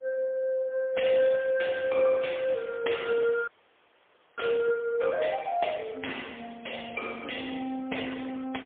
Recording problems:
phone line; 280 Hz to 3.4 kHz, AMR-NB, then MP3
audio freezing; at 3.5 s for 1 s

